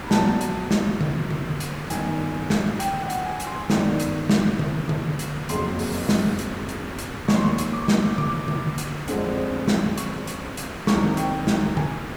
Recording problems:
hiss; SNR 9 dB

